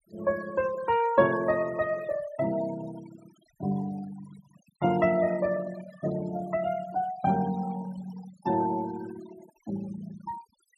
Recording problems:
denoising artefacts; signal-to-artefact ratio 16 dB

